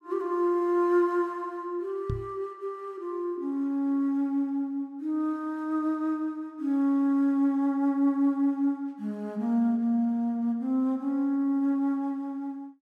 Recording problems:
microphone bump; at 2 s; peak -1 dB vs average level

